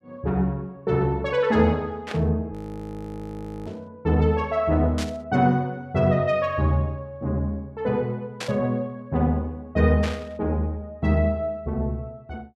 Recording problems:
burst of static; 5 times, first at 2 s; peak -4 dB vs average level
audio freezing; at 2.5 s for 1 s

